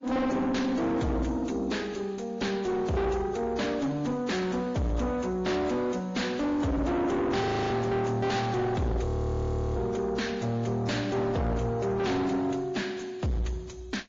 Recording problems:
lossy compression; MP3, then AAC, log-spectral distance 3 dB
distorted audio; soft clipping, signal-to-distortion ratio 6 dB
audio freezing; at 7.5 s and at 9 s for 0.5 s

